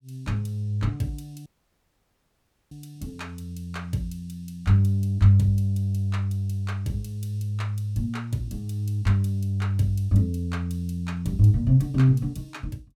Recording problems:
dropout; at 1.5 s for 1.5 s

